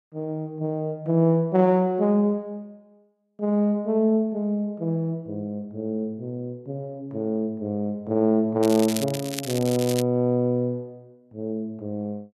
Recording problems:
crackle; from 8.5 to 10 s; loose cable, SNR 9 dB

